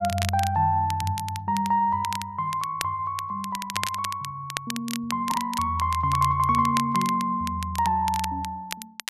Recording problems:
crackling; vinyl, SNR 11 dB
packet loss; 0.5% of the sound replaced, filled with the last packet

